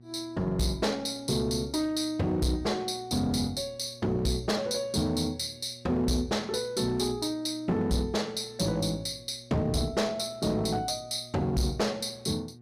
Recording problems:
distortion; hard clipping, uneven, signal-to-distortion ratio 10 dB
electrical hum; 60 Hz, harmonics up to 720 Hz, SNR 22 dB

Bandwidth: 15.5 kHz